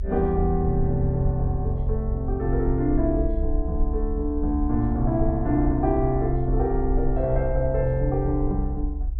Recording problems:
rumble; below 62 Hz, SNR 4 dB

